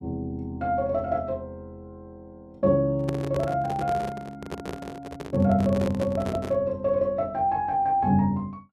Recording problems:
handling noise; from 3 to 6.5 s; peak -3 dB vs average level

